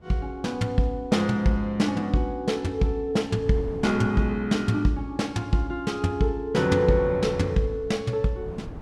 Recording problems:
wind on the microphone; below 280 Hz, SNR 20 dB

